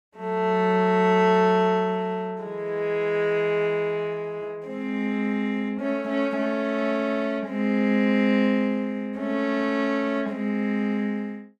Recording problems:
none

